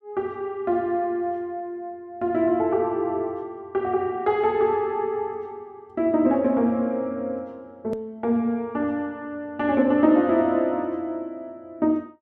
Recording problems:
click at an edit; at 8 s

